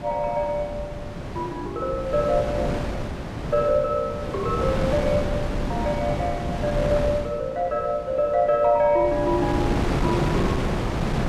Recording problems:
wind noise; below 550 Hz, SNR 3 dB

